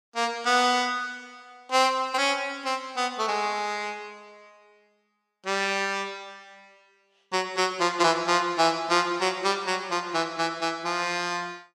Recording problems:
none

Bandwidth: 14 kHz